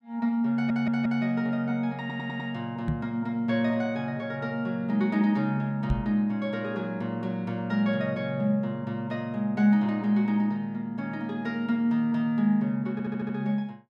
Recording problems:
stutter; at 0.5 s, at 2 s and at 13 s
knock on the microphone; at 3 s and at 6 s; peak +3 dB vs average level

